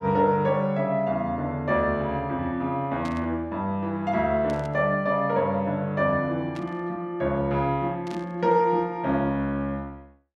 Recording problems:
burst of static; 4 times, first at 3 s; peak -12 dB vs average level

